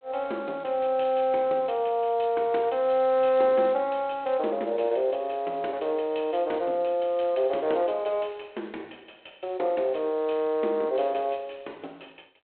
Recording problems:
phone line; 280 Hz to 3.5 kHz, G.726

